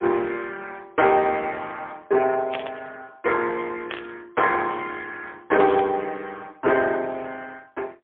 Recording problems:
phone line; 280 Hz to 3.4 kHz, AMR-NB, then MP3
static burst; at 2.5 s, at 4 s and at 5.5 s; peak -1 dB vs average level

